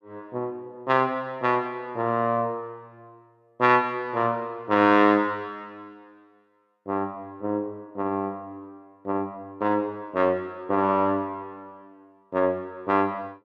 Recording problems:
none

